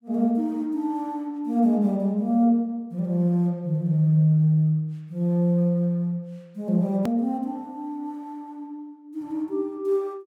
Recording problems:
click at an edit; at 7 s

